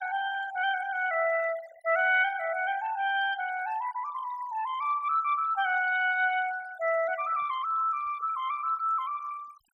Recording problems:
denoising artefacts; signal-to-artefact ratio 18 dB

